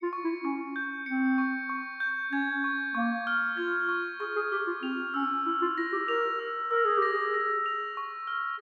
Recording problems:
none

